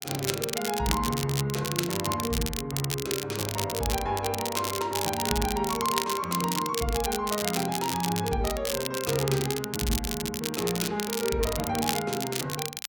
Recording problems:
crackling; vinyl, SNR 3 dB

